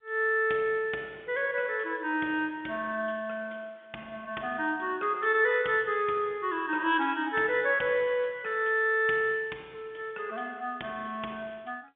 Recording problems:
telephone audio; 280 Hz to 3.6 kHz, G.711

